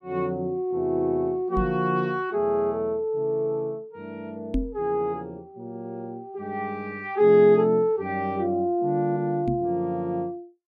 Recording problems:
microphone thump; at 1.5 s, at 4.5 s and at 9.5 s; peak +2 dB vs average level

